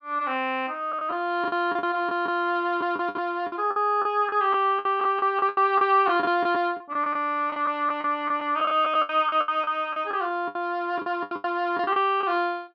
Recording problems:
lost packets; 14% of the sound replaced, filled with the last packet

